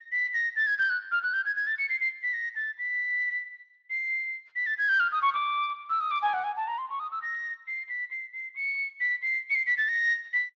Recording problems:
codec artefacts; Speex, log-spectral distance 2 dB

